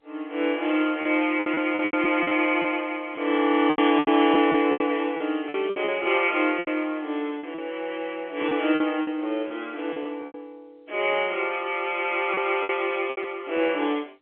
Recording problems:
phone line; 240 Hz to 3.5 kHz, G.711
packet loss; 10% of the sound replaced, filled with repeated pitch periods

